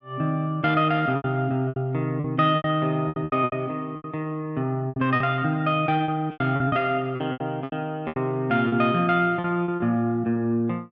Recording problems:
packet loss; 13% of the sound replaced, filled with repeated pitch periods

